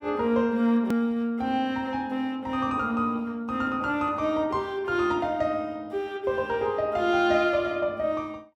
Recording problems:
edit click; at 1 s

